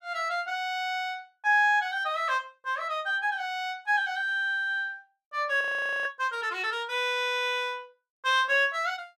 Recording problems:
frozen audio; at 5.5 s

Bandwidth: 15 kHz